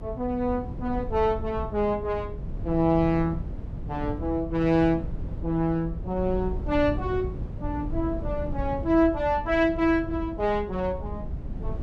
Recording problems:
low-frequency rumble; below 130 Hz, SNR 9 dB

